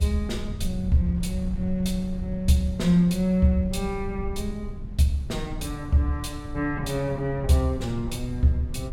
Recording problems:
rumble; below 94 Hz, SNR 10 dB
wind noise; below 460 Hz, SNR 26 dB

